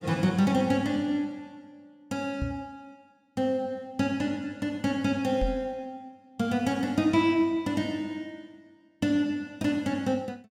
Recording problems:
knock on the microphone; at 2.5 s and at 5.5 s; peak 0 dB vs average level

